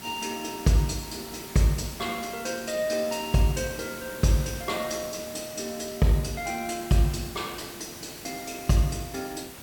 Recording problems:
hiss; slope -3 dB per octave, SNR 12 dB

